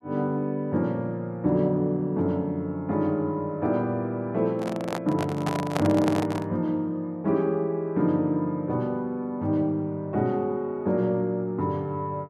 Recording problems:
microphone handling noise; from 4.5 to 6.5 s; peak +3 dB vs average level

